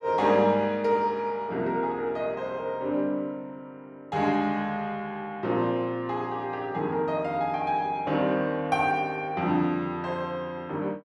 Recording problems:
none

